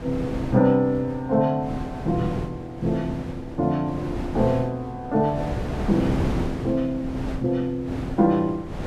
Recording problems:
wind on the microphone; below 420 Hz, SNR 8 dB

